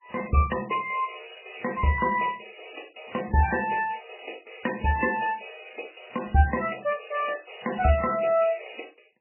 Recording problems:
codec artefacts; MP3, log-spectral distance 14 dB, nothing above 2.7 kHz
crackling; from 0.5 to 2.5 s and from 4.5 to 8.5 s; loose cable, SNR 27 dB

